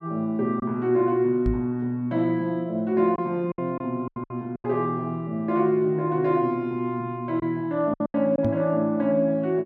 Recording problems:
lost packets; 5% of the sound replaced, filled with silence
microphone bump; at 1.5 s and at 8.5 s; peak +2 dB vs average level

